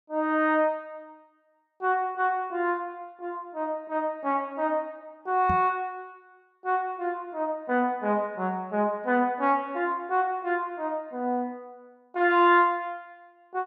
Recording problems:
microphone thump; at 5.5 s; peak -1 dB vs average level

